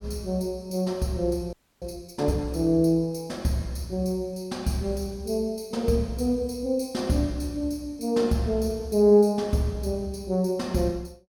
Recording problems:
audio freezing; at 1.5 s

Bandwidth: 17.5 kHz